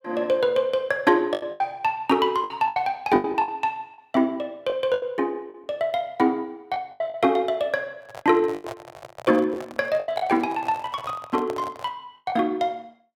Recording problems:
packet loss; 9% of the sound replaced, filled with the last packet
microphone handling noise; from 8 to 12 s; peak -6 dB vs average level

